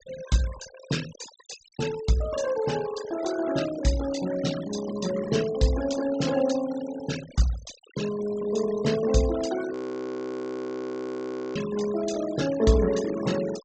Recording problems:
treble cut off; nothing above 8 kHz
denoising artefacts; signal-to-artefact ratio 13 dB
audio freezing; at 9.5 s for 2 s

